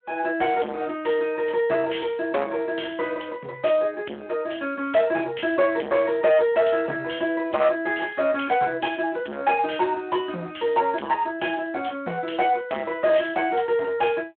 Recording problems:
phone line; 240 Hz to 3.4 kHz, Speex
distorted audio; soft clipping, signal-to-distortion ratio 7 dB

